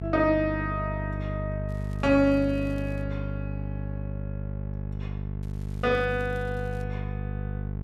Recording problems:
hum; 50 Hz, harmonics up to 500 Hz, SNR 5 dB
crackle; from 1.5 to 3 s and from 5.5 to 7 s; loose cable, SNR 30 dB

